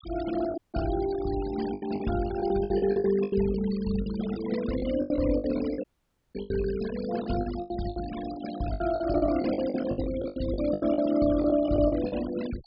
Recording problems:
low-pass filter; nothing above 5.5 kHz
denoising artefacts; signal-to-artefact ratio 15 dB
lost packets; 17% of the sound replaced, filled with the last packet
dropout; at 0.5 s and at 6 s for 0.5 s

